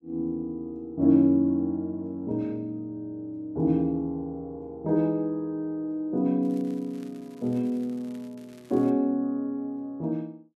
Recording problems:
crackling; from 6.5 to 9 s; loose cable, SNR 29 dB

